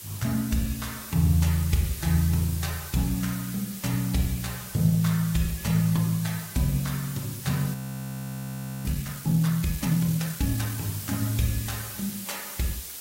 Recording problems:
codec artefacts; AAC, log-spectral distance 9 dB
hiss; SNR 10 dB
frozen audio; at 7.5 s for 1 s

